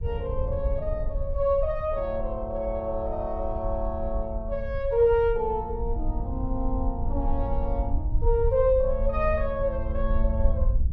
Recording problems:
rumble; below 64 Hz, SNR 4 dB

